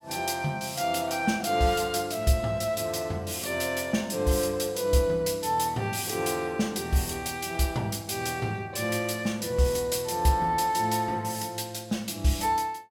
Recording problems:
none

